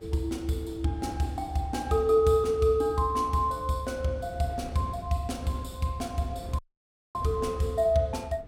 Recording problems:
wind noise; below 370 Hz, SNR 20 dB
dropout; at 6.5 s for 0.5 s

